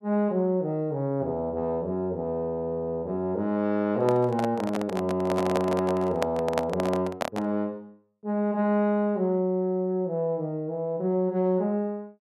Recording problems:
handling noise; from 4 to 7.5 s; peak +4 dB vs average level

